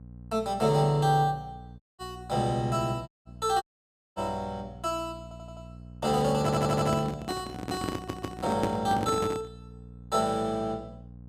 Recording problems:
hum; 60 Hz, harmonics up to 540 Hz, SNR 18 dB
dropout; at 2 s, at 3 s and at 3.5 s for 0.5 s
stutter; at 5 s, at 6.5 s and at 8 s
handling noise; from 6.5 to 9.5 s; peak +3 dB vs average level

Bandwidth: 15.5 kHz